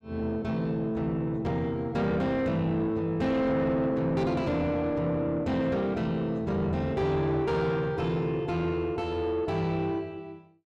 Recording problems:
distortion; soft clipping, signal-to-distortion ratio 10 dB

